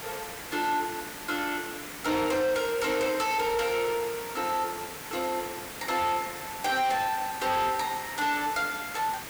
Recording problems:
distorted audio; hard clipping, signal-to-distortion ratio 11 dB
hiss; slope -2 dB per octave, SNR 10 dB

